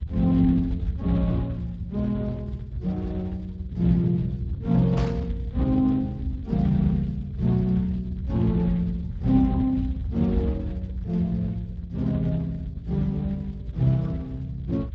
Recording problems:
codec artefacts; Speex, log-spectral distance 2 dB, nothing above 17.1 kHz
low-frequency rumble; below 100 Hz, SNR 8 dB
static burst; at 5 s; peak -9 dB vs average level

